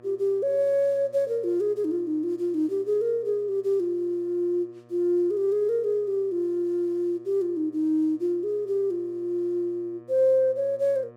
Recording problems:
electrical hum; 60 Hz, harmonics up to 1.9 kHz, SNR 27 dB

